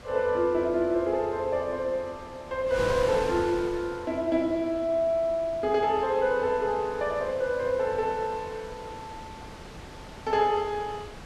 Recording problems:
wind on the microphone; below 1.8 kHz, SNR 15 dB

